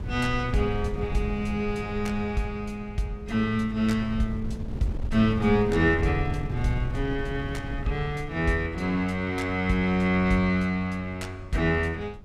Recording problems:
wind on the microphone; below 120 Hz, SNR 10 dB

